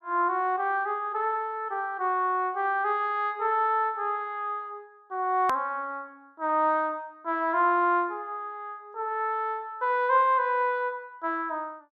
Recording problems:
hard cut with a click; at 5.5 s

